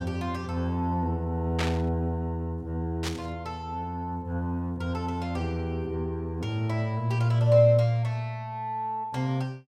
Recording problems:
burst of static; at 1.5 s and at 3 s; peak +1 dB vs average level

